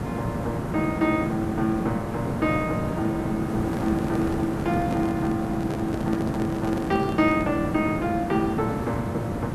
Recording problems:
background hiss; slope -9 dB per octave, SNR 3 dB
handling noise; from 3.5 to 7.5 s; peak -2 dB vs average level

